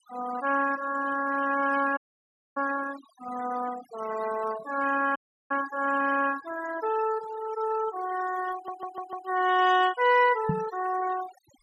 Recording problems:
denoising artefacts; signal-to-artefact ratio 14 dB
dropout; at 2 s for 0.5 s and at 5 s
audio stuttering; at 8.5 s
microphone bump; at 10 s; peak +3 dB vs average level

